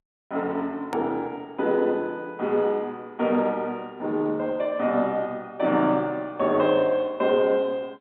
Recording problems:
phone line; 190 Hz to 3.7 kHz, G.711
edit click; at 1 s

